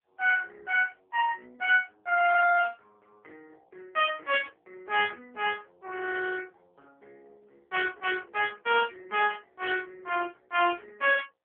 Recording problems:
telephone audio; 340 Hz to 3 kHz, AMR-NB

